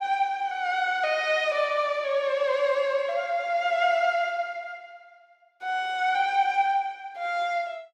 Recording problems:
none

